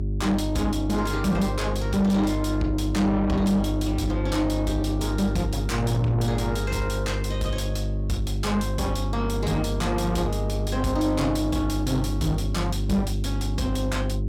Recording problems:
distortion; soft clipping, signal-to-distortion ratio 10 dB
hum; 50 Hz, harmonics up to 400 Hz, SNR 2 dB

